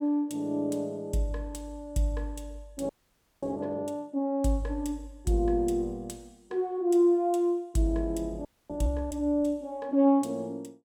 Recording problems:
frozen audio; at 3 s for 0.5 s and at 8.5 s

